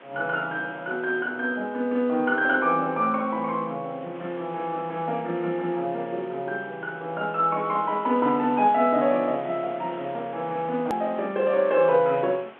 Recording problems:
telephone audio; 260 Hz to 3.4 kHz, G.711
hiss; SNR 20 dB
hard cut with a click; at 11 s

